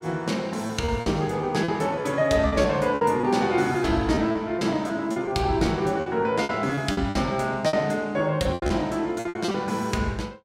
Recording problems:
lost packets; 11% of the sound replaced, filled with repeated pitch periods

